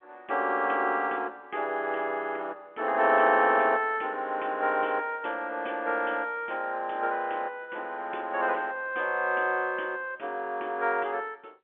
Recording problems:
telephone audio; 280 Hz to 3.4 kHz, G.711

